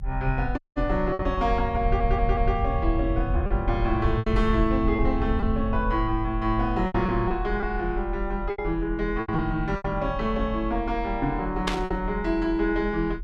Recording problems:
low-frequency rumble; below 70 Hz, SNR 5 dB
lost packets; 6% of the sound replaced, filled with repeated pitch periods
audio cutting out; at 0.5 s
stutter; at 2 s
burst of static; at 12 s; peak +4 dB vs average level

